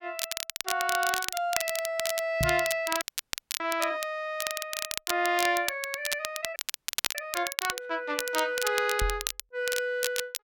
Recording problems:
crackle; vinyl, SNR 3 dB
microphone bump; at 2.5 s and at 9 s; peak +3 dB vs average level
audio freezing; at 3 s for 0.5 s and at 6.5 s for 0.5 s

